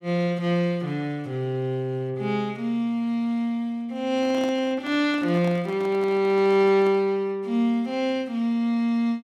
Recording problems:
microphone handling noise; from 4 to 7 s; peak -8 dB vs average level

